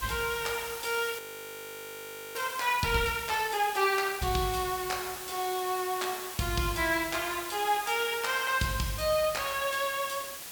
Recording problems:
background hiss; slope 0 dB per octave, SNR 9 dB
audio freezing; at 1 s for 1 s

